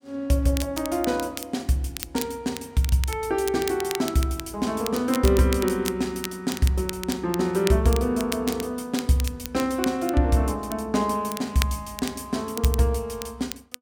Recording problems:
crackling; vinyl, SNR 11 dB

